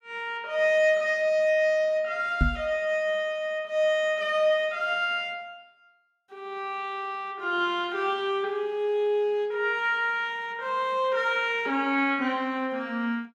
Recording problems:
microphone thump; at 2.5 s; peak +5 dB vs average level

